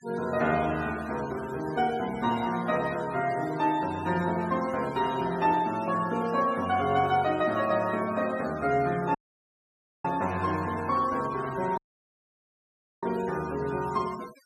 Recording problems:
noise reduction artefacts; signal-to-artefact ratio 17 dB
dropout; at 9 s for 1 s and at 12 s for 1 s

